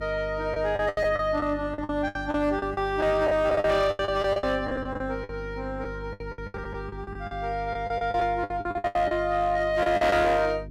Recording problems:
distortion; hard clipping, signal-to-distortion ratio 11 dB
hum; 50 Hz, harmonics up to 400 Hz, SNR 14 dB
lost packets; 17% of the sound replaced, filled with the last packet

